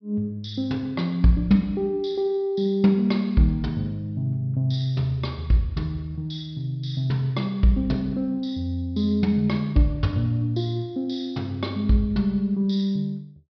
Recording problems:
treble missing; nothing above 5.5 kHz

